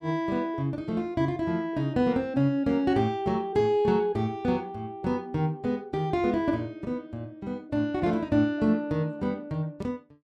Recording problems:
none

